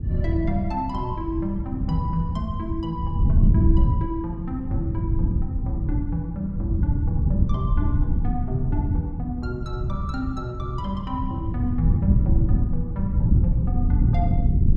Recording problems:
wind noise; below 120 Hz, SNR -5 dB

